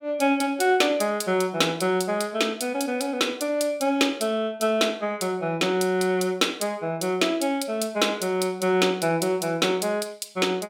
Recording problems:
none

